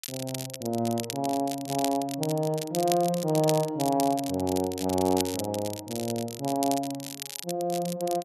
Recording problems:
crackling; vinyl, SNR 9 dB

